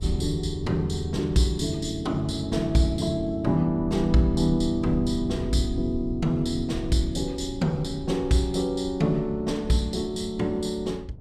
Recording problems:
rumble; below 94 Hz, SNR 13 dB
wind noise; below 240 Hz, SNR 20 dB

